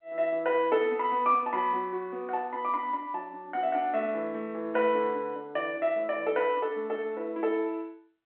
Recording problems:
telephone audio; 240 Hz to 3.5 kHz, G.711

